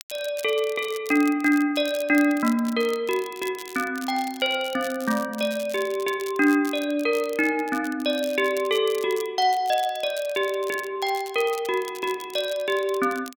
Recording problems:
crackling; vinyl, SNR 17 dB

